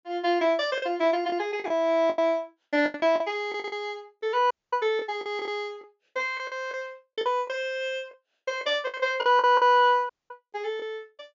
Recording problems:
treble cut off; nothing above 7.3 kHz
packet loss; 11% of the sound replaced, filled with the last packet
audio cutting out; at 4.5 s and at 10 s

